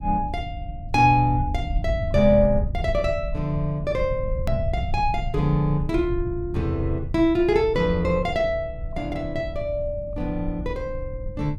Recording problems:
rumble; below 90 Hz, SNR 8 dB
hard cut with a click; at 4.5 s

